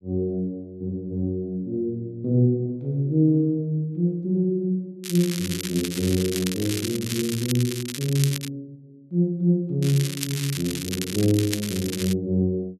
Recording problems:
crackle; from 5 to 8.5 s and from 10 to 12 s; loose cable, SNR 7 dB

